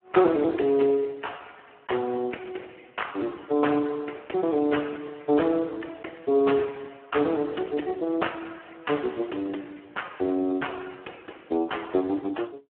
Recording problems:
phone line; 240 Hz to 3.3 kHz, Speex

